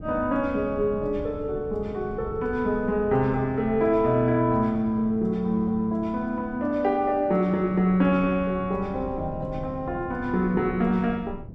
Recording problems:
wind noise; below 200 Hz, SNR 16 dB

